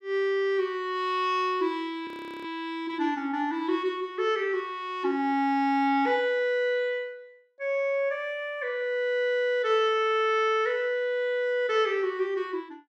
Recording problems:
audio freezing; at 2 s

